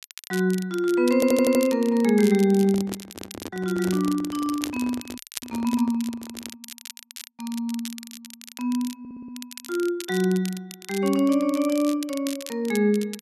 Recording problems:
crackling; vinyl, SNR 15 dB
audio stuttering; at 1 s and at 9 s
handling noise; from 2.5 to 6.5 s; peak -7 dB vs average level
dropout; at 5 s

